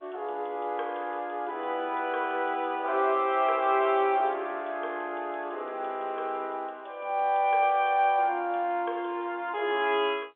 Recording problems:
telephone audio; 300 Hz to 3.7 kHz, G.711

